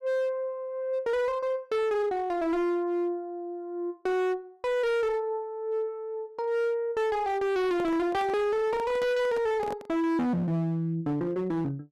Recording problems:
distorted audio; hard clipping, uneven, signal-to-distortion ratio 8 dB
microphone handling noise; from 7.5 to 10 s; peak -4 dB vs average level

